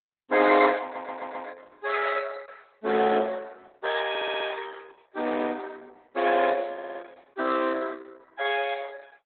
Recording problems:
lossy compression; Opus, log-spectral distance 5 dB, nothing above 3.4 kHz
audio stuttering; at 1 s, at 4 s and at 6.5 s

